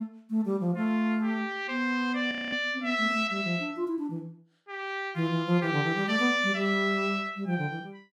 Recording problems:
frozen audio; at 2.5 s

